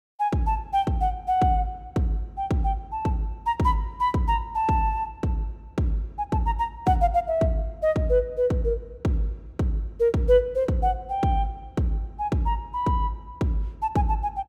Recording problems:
none

